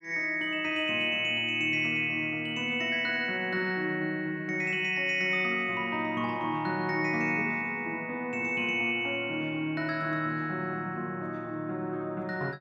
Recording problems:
none

